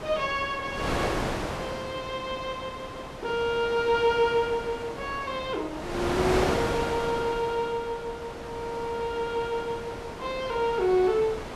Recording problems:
wind noise; below 1.4 kHz, SNR 5 dB

